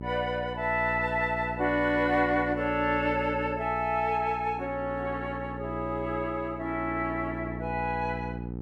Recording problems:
hum; 60 Hz, harmonics up to 840 Hz, SNR 10 dB

